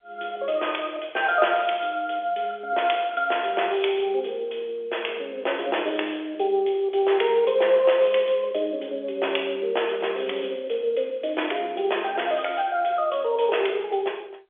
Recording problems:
telephone audio; 340 Hz to 3.5 kHz, G.711

